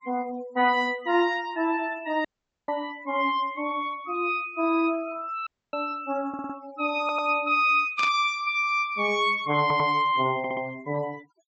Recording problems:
treble cut off; nothing above 8 kHz
noise reduction artefacts; signal-to-artefact ratio 23 dB
dropout; at 2.5 s and at 5.5 s
stutter; 4 times, first at 6.5 s
burst of static; at 8 s; peak -4 dB vs average level

